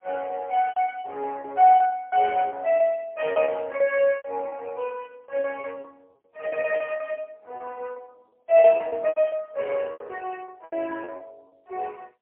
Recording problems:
phone line; 340 Hz to 3 kHz, AMR-NB, then MP3
lost packets; 14% of the sound replaced, filled with repeated pitch periods

